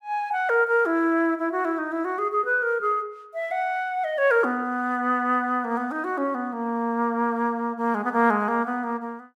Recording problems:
none

